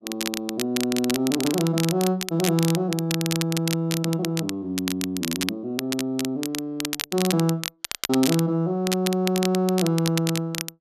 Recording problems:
crackle; vinyl, SNR 6 dB

